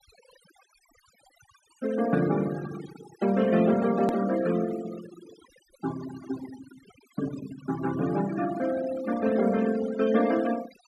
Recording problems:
denoising artefacts; signal-to-artefact ratio 15 dB
edit click; at 4 s

